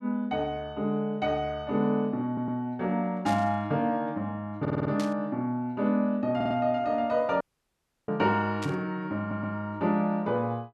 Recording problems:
audio stuttering; 4 times, first at 2.5 s
burst of static; at 3.5 s, at 5 s and at 8.5 s; peak -7 dB vs average level
dropout; at 7.5 s for 0.5 s

